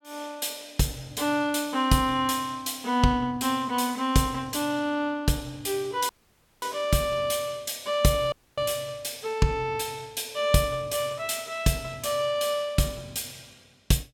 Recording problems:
dropout; at 6 s for 0.5 s and at 8.5 s

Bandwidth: 18 kHz